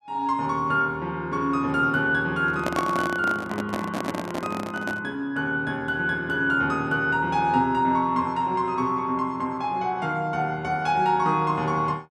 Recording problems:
handling noise; from 2.5 to 5 s; peak +1 dB vs average level

